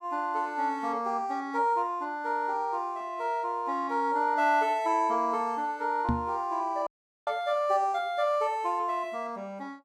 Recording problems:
microphone bump; at 6 s; peak +4 dB vs average level
audio cutting out; at 7 s

